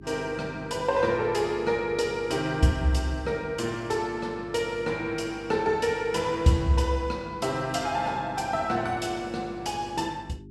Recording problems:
mains hum; 50 Hz, harmonics up to 400 Hz, SNR 18 dB

